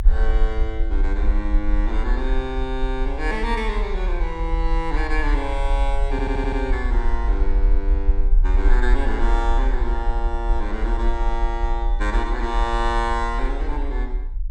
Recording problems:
rumble; below 42 Hz, SNR -3 dB
audio stuttering; at 6 s

